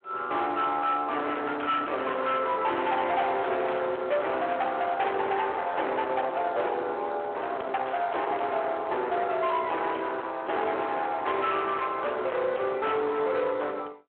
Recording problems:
phone line; 320 Hz to 3.8 kHz, Speex
distorted audio; hard clipping, signal-to-distortion ratio 7 dB

